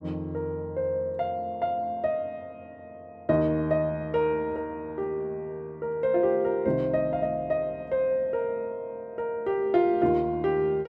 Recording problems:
none

